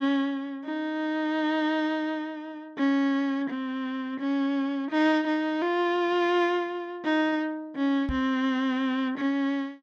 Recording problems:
knock on the microphone; at 8 s; peak -3 dB vs average level

